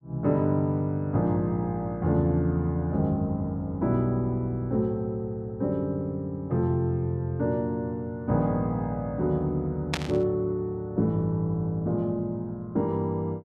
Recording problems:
burst of static; at 10 s; peak +3 dB vs average level

